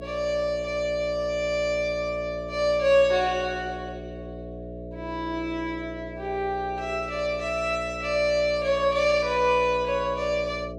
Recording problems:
electrical hum; 60 Hz, harmonics up to 660 Hz, SNR 13 dB

